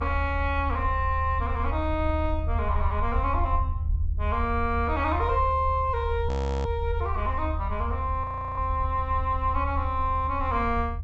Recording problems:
treble cut off; nothing above 7.9 kHz
low-frequency rumble; below 78 Hz, SNR 2 dB
frozen audio; at 6.5 s and at 8 s

